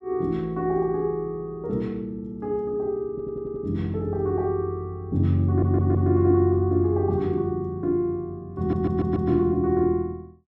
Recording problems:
stutter; at 3 s, at 5.5 s and at 8.5 s

